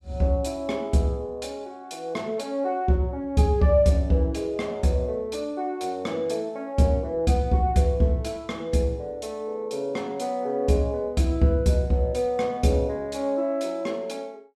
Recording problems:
none

